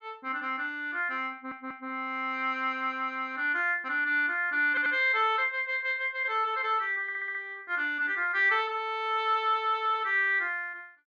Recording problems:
audio stuttering; at 1.5 s, at 4.5 s and at 7 s

